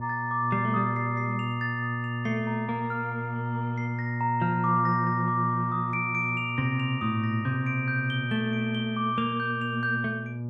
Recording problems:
electrical hum; 60 Hz, harmonics up to 600 Hz, SNR 5 dB

